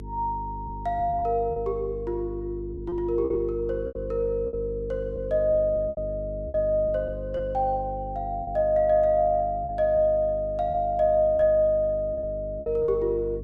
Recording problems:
electrical hum; 50 Hz, harmonics up to 450 Hz, SNR 13 dB
lost packets; 7% of the sound replaced, filled with repeated pitch periods

